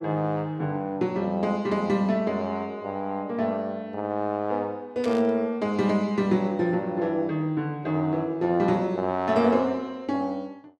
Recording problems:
burst of static; at 5 s; peak -8 dB vs average level

